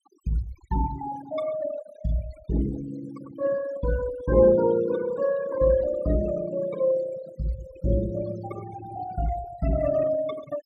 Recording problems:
noise reduction artefacts; signal-to-artefact ratio 14 dB

